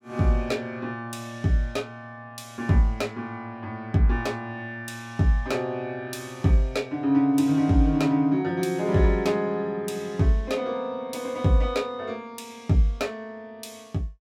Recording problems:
none

